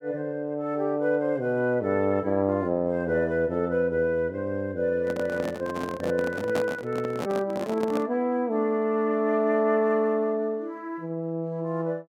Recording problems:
handling noise; from 5 to 8 s; peak 0 dB vs average level

